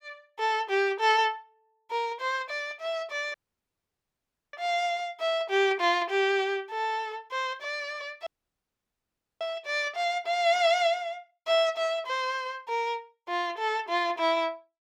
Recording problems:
dropout; at 3.5 s for 1 s and at 8.5 s for 1 s

